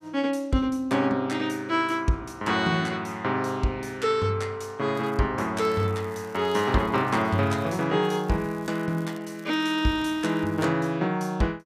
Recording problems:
crackling; at 5 s, from 5.5 to 8 s and from 8 to 11 s; loose cable, SNR 28 dB

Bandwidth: 15 kHz